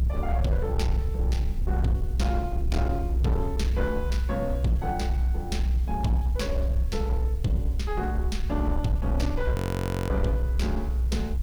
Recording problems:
distorted audio; hard clipping, signal-to-distortion ratio 11 dB
background hiss; slope +2 dB per octave, SNR 24 dB
low-frequency rumble; below 64 Hz, strongest tone 62 Hz, SNR -3 dB
wind on the microphone; below 180 Hz, SNR 14 dB
audio freezing; at 9.5 s for 0.5 s

